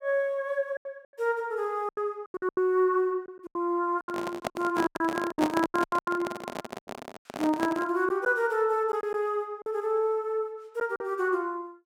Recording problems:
lost packets; 12% of the sound replaced, filled with silence
microphone handling noise; from 4 to 8 s; peak +3 dB vs average level

